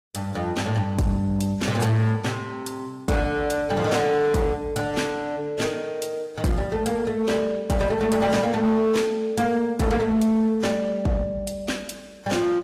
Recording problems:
codec artefacts; AAC, log-spectral distance 2 dB, nothing above 14.7 kHz
distortion; hard clipping, uneven, signal-to-distortion ratio 11 dB

